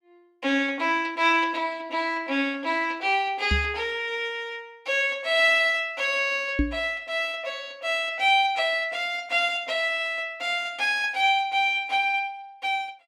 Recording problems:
knock on the microphone; at 3.5 s and at 6.5 s; peak +4 dB vs average level

